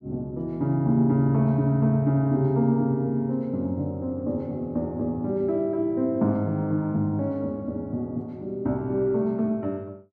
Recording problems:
none

